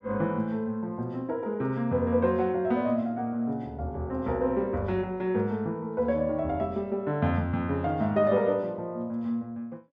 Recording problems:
none

